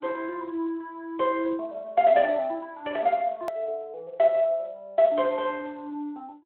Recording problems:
phone line; 300 Hz to 3.3 kHz, Speex
hard cut with a click; at 3.5 s

